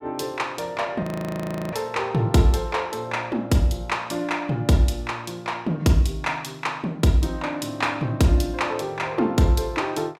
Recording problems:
audio freezing; at 1 s for 0.5 s

